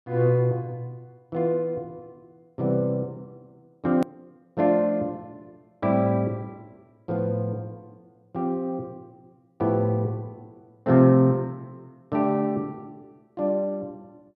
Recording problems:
click at an edit; at 4 s

